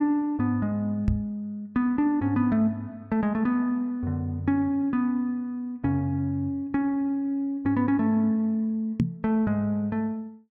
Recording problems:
microphone thump; at 1 s and at 9 s; peak +6 dB vs average level

